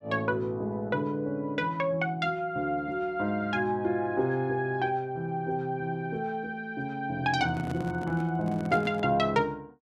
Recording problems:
microphone handling noise; from 7.5 to 9 s; peak -3 dB vs average level

